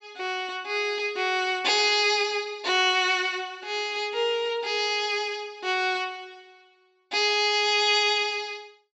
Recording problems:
low-pass filter; nothing above 7.8 kHz

